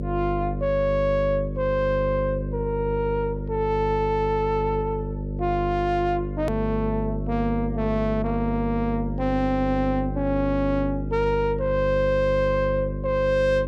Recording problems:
distortion; soft clipping, signal-to-distortion ratio 10 dB
hum; 50 Hz, harmonics up to 600 Hz, SNR 5 dB
edit click; at 6.5 s

